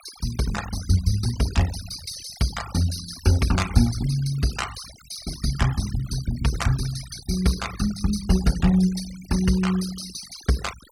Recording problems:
denoising artefacts; signal-to-artefact ratio 14 dB

